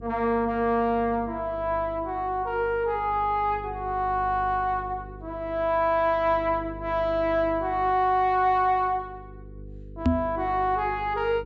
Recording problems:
treble cut off; nothing above 8 kHz
hum; 50 Hz, harmonics up to 500 Hz, SNR 18 dB
knock on the microphone; at 10 s; peak +6 dB vs average level

